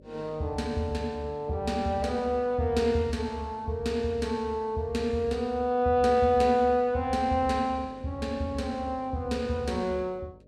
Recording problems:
hum; 50 Hz, harmonics up to 600 Hz, SNR 25 dB

